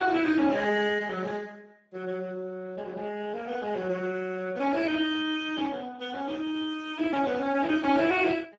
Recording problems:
lossy compression; Speex, log-spectral distance 4 dB

